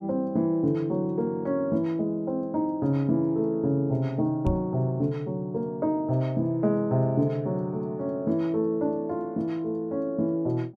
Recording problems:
knock on the microphone; at 4.5 s; peak +3 dB vs average level

